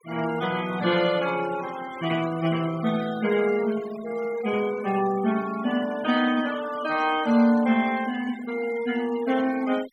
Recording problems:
denoising artefacts; signal-to-artefact ratio 16 dB

